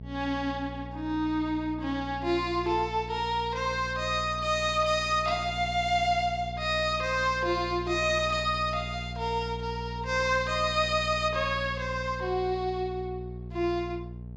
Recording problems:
electrical hum; 60 Hz, harmonics up to 660 Hz, SNR 11 dB

